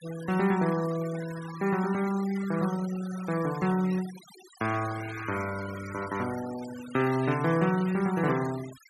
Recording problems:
denoising artefacts; signal-to-artefact ratio 15 dB

